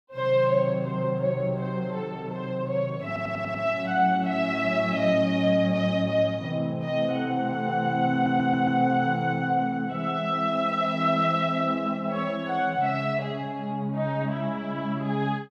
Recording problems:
stutter; at 3 s and at 8 s

